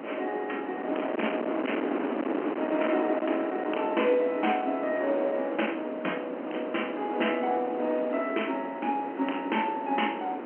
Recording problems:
telephone audio; 240 Hz to 3.1 kHz, G.711
distorted audio; hard clipping, signal-to-distortion ratio 13 dB
wind on the microphone; below 810 Hz, SNR 5 dB

